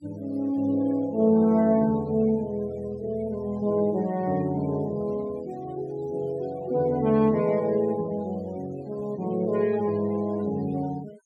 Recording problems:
denoising artefacts; signal-to-artefact ratio 23 dB

